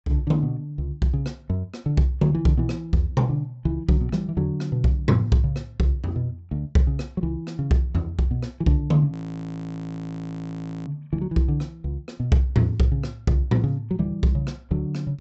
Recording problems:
low-pass filter; nothing above 7.9 kHz
frozen audio; at 9 s for 1.5 s

